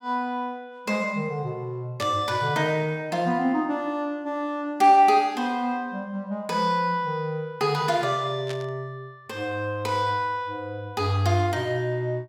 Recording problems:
static burst; at 2 s and at 8.5 s; peak -7 dB vs average level

